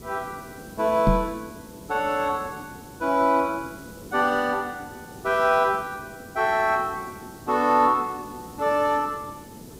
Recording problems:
hiss; SNR 19 dB
microphone bump; at 1 s; peak +5 dB vs average level

